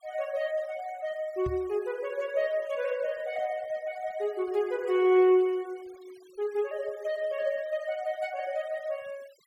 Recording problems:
denoising artefacts; signal-to-artefact ratio 25 dB
knock on the microphone; at 1.5 s; peak -4 dB vs average level

